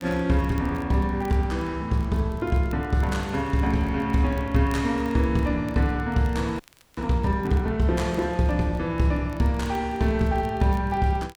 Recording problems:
crackling; vinyl, SNR 30 dB
audio freezing; at 6.5 s

